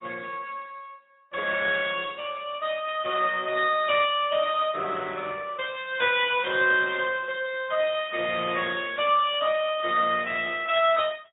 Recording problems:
treble cut off; nothing above 3.1 kHz
lossy codec; Speex, then Opus, log-spectral distance 4 dB

